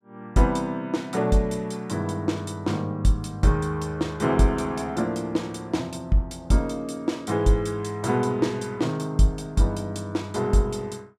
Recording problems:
none

